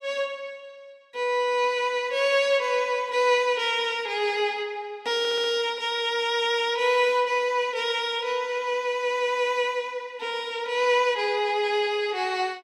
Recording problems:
stutter; at 5 s

